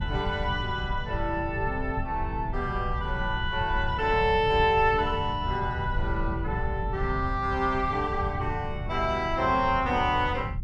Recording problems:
rumble; below 110 Hz, SNR 7 dB

